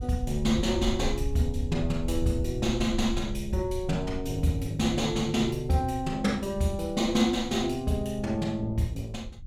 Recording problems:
low-frequency rumble; below 80 Hz, SNR 10 dB

